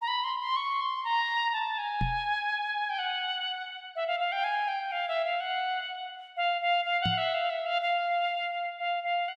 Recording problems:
knock on the microphone; at 2 s and at 7 s; peak +1 dB vs average level

